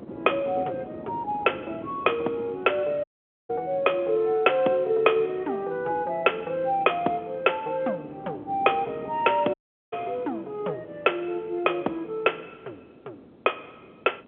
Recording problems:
phone line; 300 Hz to 3.4 kHz, G.711
wind on the microphone; below 470 Hz, SNR 18 dB
audio cutting out; at 3 s and at 9.5 s

